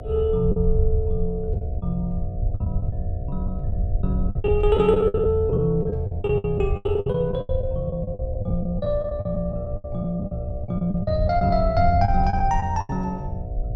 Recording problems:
electrical hum; 60 Hz, harmonics up to 720 Hz, SNR 16 dB
low-frequency rumble; below 86 Hz, SNR 5 dB
lost packets; 14% of the sound replaced, filled with the last packet

